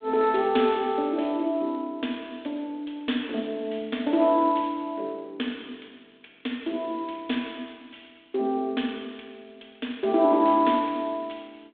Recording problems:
telephone audio; 220 Hz to 3.7 kHz, G.726

